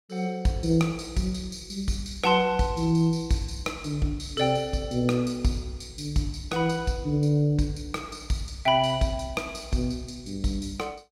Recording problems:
none

